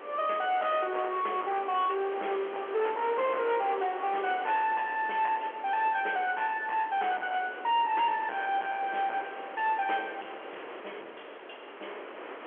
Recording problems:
telephone audio; 320 Hz to 3.5 kHz, G.711
distortion; soft clipping, signal-to-distortion ratio 10 dB
hiss; SNR 14 dB

